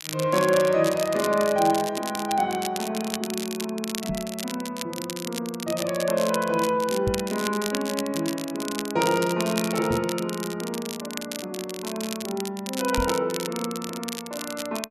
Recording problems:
crackling; vinyl, SNR 8 dB
knock on the microphone; 4 times, first at 4 s; peak +1 dB vs average level

